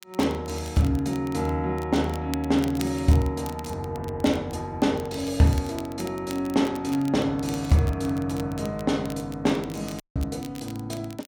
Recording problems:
crackling; vinyl, SNR 19 dB
audio cutting out; at 10 s

